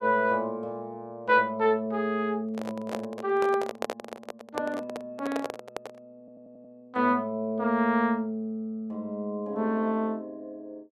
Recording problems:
handling noise; from 2.5 to 6 s; peak 0 dB vs average level
stutter; at 6 s

